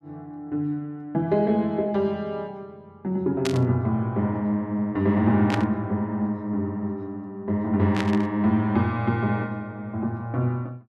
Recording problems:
static burst; at 3.5 s, at 5.5 s and at 8 s; peak 0 dB vs average level

